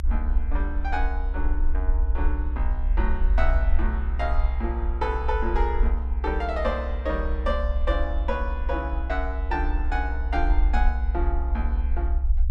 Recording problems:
rumble; below 62 Hz, SNR -4 dB

